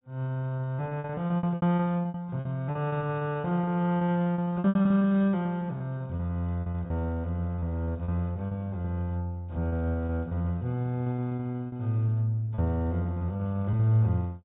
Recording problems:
low-pass filter; nothing above 4 kHz
lost packets; 17% of the sound replaced, filled with repeated pitch periods

